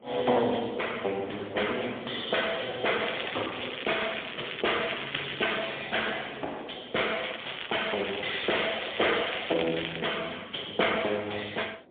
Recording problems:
telephone audio; 300 Hz to 3.5 kHz, AMR-NB, then MP3
wind on the microphone; below 650 Hz, SNR 18 dB
crackle; from 3 to 5.5 s and from 7 to 10 s; loose cable, SNR 7 dB

